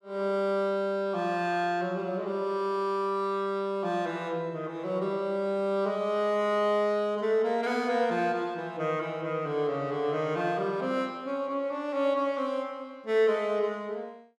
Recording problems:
none

